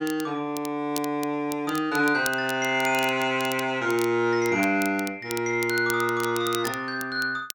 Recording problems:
crackling; vinyl, SNR 14 dB

